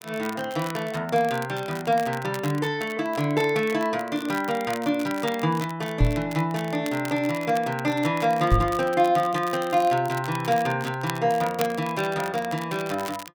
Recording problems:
crackling; vinyl, SNR 16 dB
microphone thump; at 6 s and at 8.5 s; peak +7 dB vs average level

